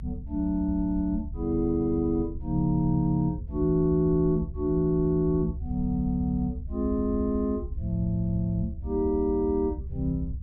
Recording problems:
rumble; below 76 Hz, SNR 9 dB

